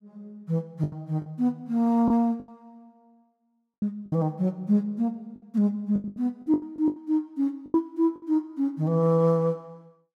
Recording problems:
packet loss; 11% of the sound replaced, filled with the last packet

